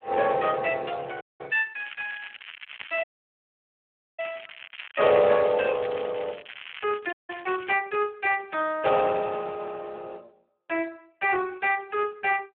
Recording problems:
phone line; 220 Hz to 3.1 kHz, Speex
audio cutting out; at 1 s, at 3 s for 1 s and at 7 s
crackling; from 2 to 7.5 s; loose cable, SNR 14 dB

